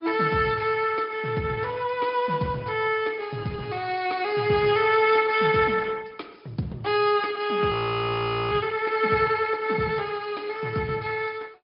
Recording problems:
treble missing; nothing above 5 kHz
lossy codec; Speex, then Opus, log-spectral distance 4 dB
frozen audio; at 7.5 s for 1 s

